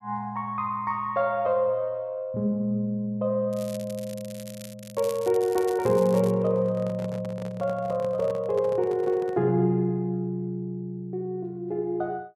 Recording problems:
crackling; from 3.5 to 6.5 s; loose cable, SNR 18 dB
handling noise; from 6 to 9.5 s; peak -9 dB vs average level

